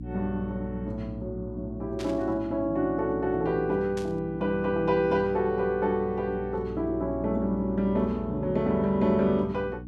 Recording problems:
hum; 60 Hz, harmonics up to 300 Hz, SNR 12 dB
burst of static; at 2 s and at 4 s; peak -9 dB vs average level

